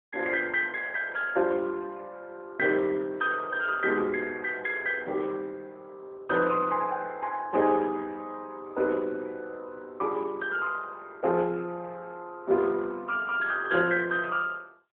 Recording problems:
telephone audio; 260 Hz to 3.3 kHz, AMR-NB

